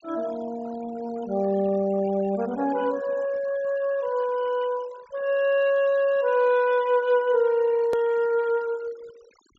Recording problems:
treble missing; nothing above 8 kHz
noise reduction artefacts; signal-to-artefact ratio 22 dB
hard cut with a click; at 8 s

